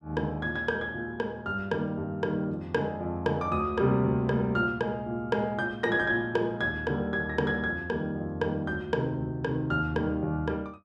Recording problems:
none

